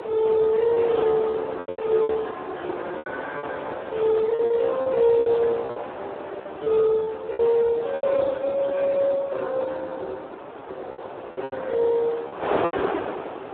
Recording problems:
telephone audio; 300 Hz to 2.4 kHz, Speex
wind noise; below 1 kHz, SNR 10 dB
lost packets; 10% of the sound replaced, filled with repeated pitch periods

